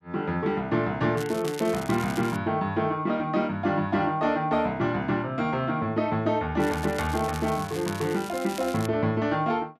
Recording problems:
crackling; from 1 to 2.5 s and from 6.5 to 9 s; loose cable, SNR 15 dB

